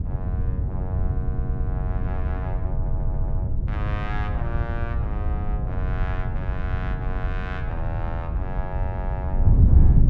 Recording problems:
electrical hum; 60 Hz, harmonics up to 480 Hz, SNR 15 dB
wind noise; below 100 Hz, SNR -11 dB
stutter; at 1 s and at 2.5 s

